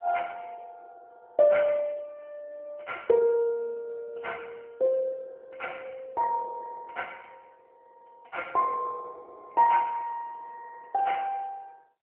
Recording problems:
telephone audio; 320 Hz to 3.2 kHz, AMR-NB

